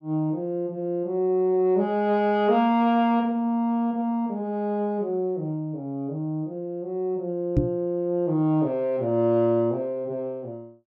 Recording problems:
microphone bump; at 7.5 s; peak +7 dB vs average level

